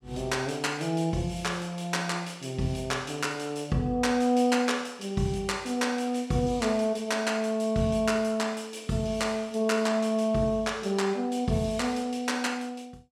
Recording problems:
none

